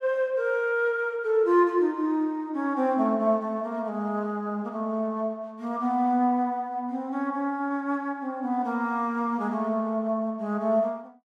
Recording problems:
none

